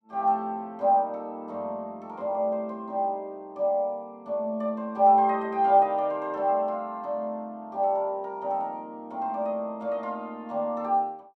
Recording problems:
none

